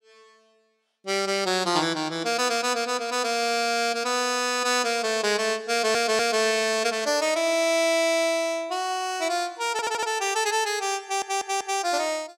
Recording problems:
audio stuttering; at 5.5 s, at 9.5 s and at 11 s

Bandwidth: 16.5 kHz